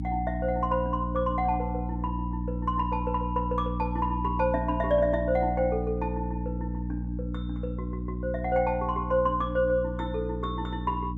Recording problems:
hum; 60 Hz, harmonics up to 300 Hz, SNR 4 dB

